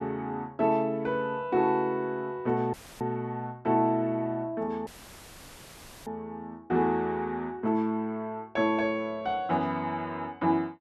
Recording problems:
audio cutting out; at 2.5 s and at 5 s for 1 s; filled with static

